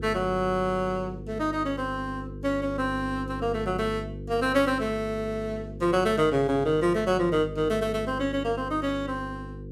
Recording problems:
hum; 50 Hz, harmonics up to 500 Hz, SNR 11 dB

